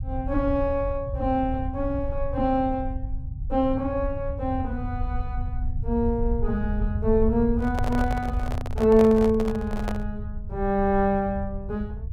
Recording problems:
rumble; below 86 Hz, SNR 7 dB
microphone handling noise; from 7.5 to 10 s; peak -2 dB vs average level

